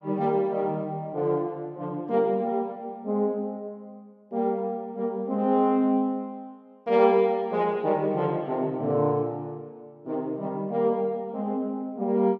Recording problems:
none

